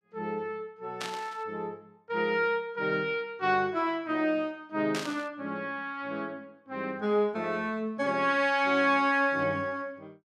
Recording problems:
burst of static; at 1 s and at 5 s; peak -2 dB vs average level

